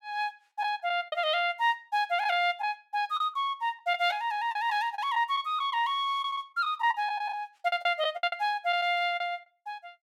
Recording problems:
packet loss; 8% of the sound replaced, filled with the last packet

